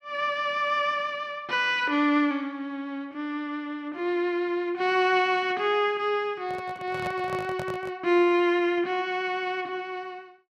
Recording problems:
microphone handling noise; from 6.5 to 8 s; peak -6 dB vs average level

